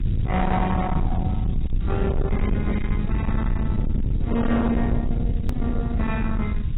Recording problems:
lossy codec; AAC, log-spectral distance 2 dB, nothing above 3.8 kHz
distorted audio; soft clipping, signal-to-distortion ratio 7 dB
background hiss; SNR 26 dB
rumble; below 170 Hz, SNR 0 dB
edit click; at 5.5 s

